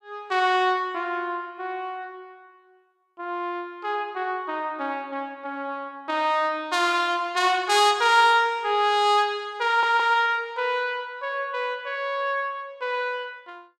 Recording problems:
stutter; at 9.5 s

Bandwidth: 14.5 kHz